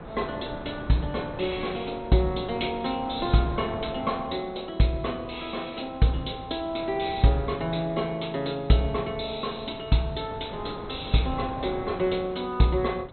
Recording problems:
low-pass filter; nothing above 4.1 kHz
wind noise; below 720 Hz, SNR 14 dB

